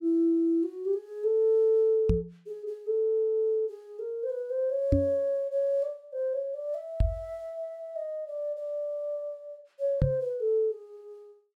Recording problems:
microphone thump; 4 times, first at 2 s; peak +8 dB vs average level

